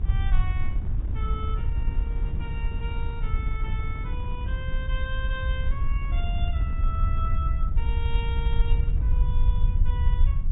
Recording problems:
treble missing; nothing above 4 kHz
rumble; below 68 Hz, SNR -11 dB
wind on the microphone; below 150 Hz, SNR 0 dB

